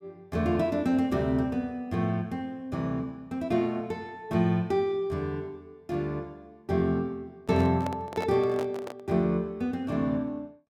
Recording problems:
handling noise; from 7.5 to 9 s; peak -3 dB vs average level

